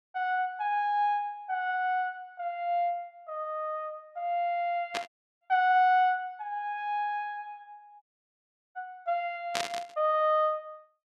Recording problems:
static burst; at 5 s and at 9.5 s; peak +3 dB vs average level
dropout; at 5 s and at 8 s for 0.5 s

